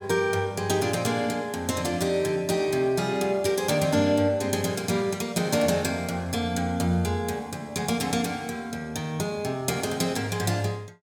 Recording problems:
none

